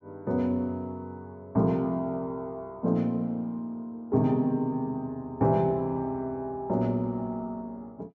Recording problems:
treble cut off; nothing above 8 kHz

